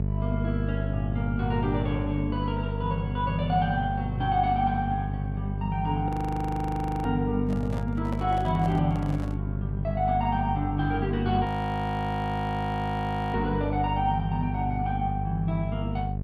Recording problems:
hum; 50 Hz, harmonics up to 650 Hz, SNR 2 dB
audio freezing; at 6 s for 1 s and at 11 s for 2 s
handling noise; from 7.5 to 9.5 s; peak -5 dB vs average level

